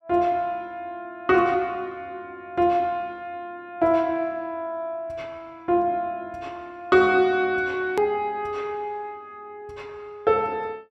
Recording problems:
click at an edit; at 8 s

